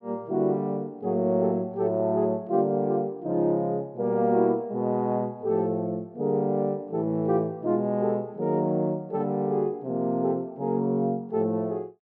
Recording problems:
none

